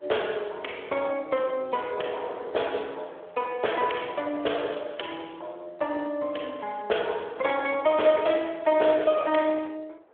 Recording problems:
phone line; 340 Hz to 3.5 kHz, Speex
wind noise; below 870 Hz, SNR 20 dB

